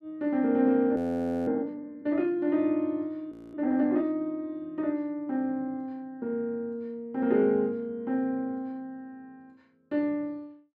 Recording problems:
frozen audio; at 1 s for 0.5 s and at 3.5 s

